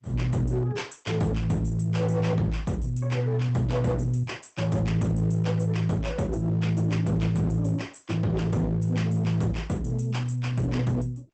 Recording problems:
lossy compression; Opus, log-spectral distance 3 dB, nothing above 8.2 kHz
distorted audio; hard clipping, signal-to-distortion ratio 11 dB

